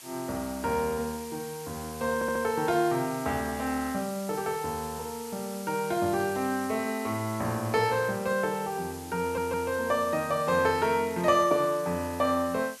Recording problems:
hiss; slope +2 dB per octave, SNR 15 dB
stutter; at 2 s and at 9 s

